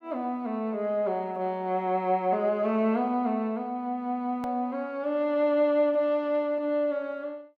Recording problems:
hard cut with a click; at 4.5 s

